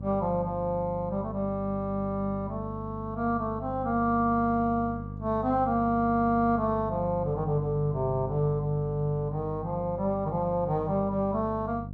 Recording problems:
electrical hum; 50 Hz, harmonics up to 550 Hz, SNR 10 dB

